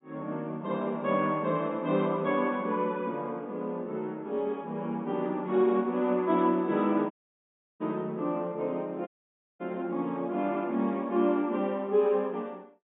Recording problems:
low-pass filter; nothing above 4 kHz
audio cutting out; at 7 s for 0.5 s and at 9 s for 0.5 s

